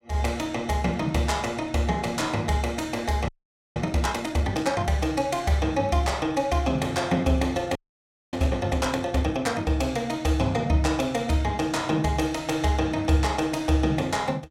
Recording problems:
audio freezing; at 3.5 s and at 8 s for 0.5 s

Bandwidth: 16 kHz